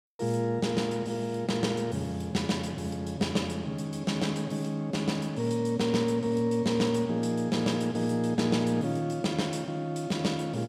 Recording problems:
none

